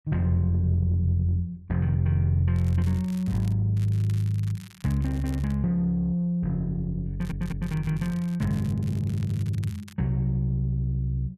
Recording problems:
crackling; at 2.5 s, from 4 to 5.5 s and from 7 to 10 s; loose cable, SNR 24 dB
stutter; at 7 s

